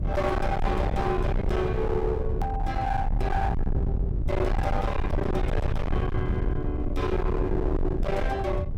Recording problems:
distorted audio; hard clipping, uneven, signal-to-distortion ratio 6 dB
rumble; below 130 Hz, SNR 0 dB
edit click; at 2.5 s

